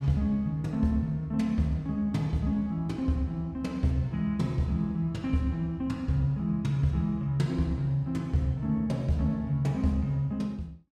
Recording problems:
none

